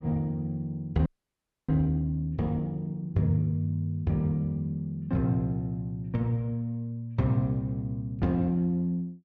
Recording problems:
frozen audio; at 1 s for 0.5 s

